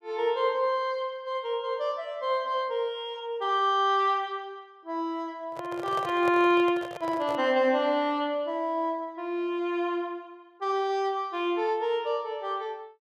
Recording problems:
microphone handling noise; from 5.5 to 7.5 s; peak -4 dB vs average level

